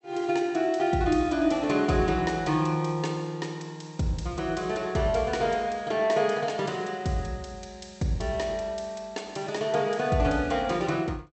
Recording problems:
low-pass filter; nothing above 8 kHz

